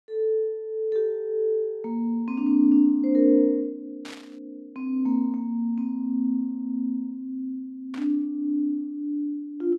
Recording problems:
static burst; at 4 s and at 8 s; peak -12 dB vs average level

